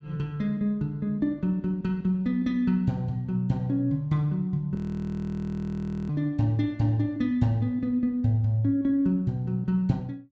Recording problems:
treble missing; nothing above 8 kHz
frozen audio; at 5 s for 1.5 s

